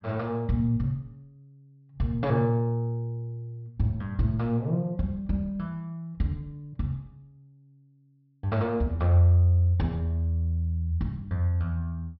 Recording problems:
treble cut off; nothing above 5.5 kHz

